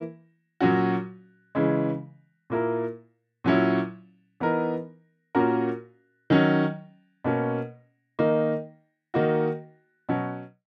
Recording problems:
none

